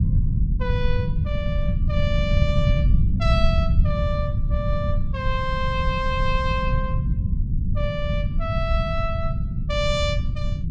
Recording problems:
rumble; below 120 Hz, SNR -4 dB

